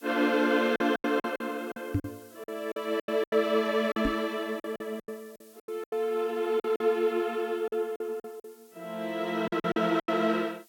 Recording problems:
hiss; SNR 27 dB
lost packets; 13% of the sound replaced, filled with silence
knock on the microphone; at 2 s and at 4 s; peak +4 dB vs average level

